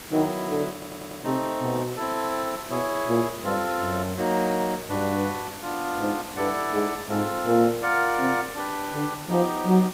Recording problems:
hiss; slope -3 dB per octave, SNR 12 dB
stutter; at 0.5 s

